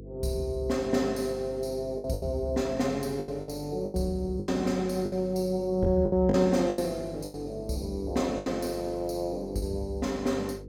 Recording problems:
hum; 50 Hz, harmonics up to 500 Hz, SNR 15 dB
lost packets; 9% of the sound replaced, filled with the last packet

